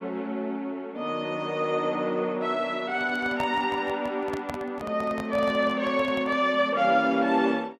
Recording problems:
handling noise; from 3 to 6.5 s; peak -5 dB vs average level

